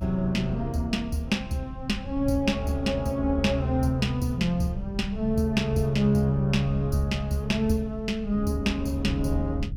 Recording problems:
low-frequency rumble; below 86 Hz, SNR 12 dB

